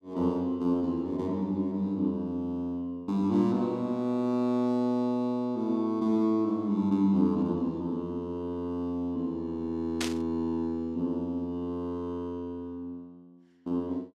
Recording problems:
burst of static; at 10 s; peak +1 dB vs average level

